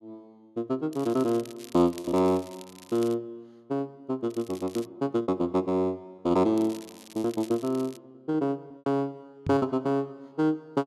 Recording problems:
packet loss; 4% of the sound replaced, filled with repeated pitch periods
crackling; from 1 to 3 s, at 4.5 s and from 6.5 to 8 s; loose cable, SNR 20 dB
microphone bump; at 9.5 s; peak -2 dB vs average level

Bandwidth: 12.5 kHz